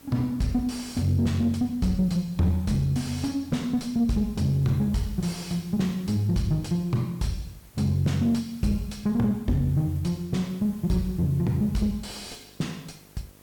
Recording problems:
distortion; soft clipping, signal-to-distortion ratio 9 dB
mains hum; 50 Hz, harmonics up to 1.3 kHz, SNR 31 dB
background hiss; slope -2 dB per octave, SNR 26 dB

